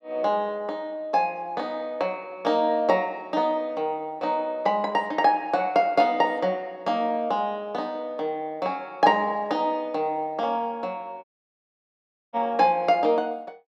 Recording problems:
audio cutting out; at 11 s for 1 s

